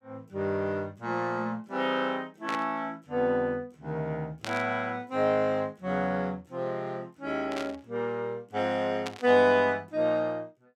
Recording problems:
burst of static; 4 times, first at 2.5 s; peak -3 dB vs average level

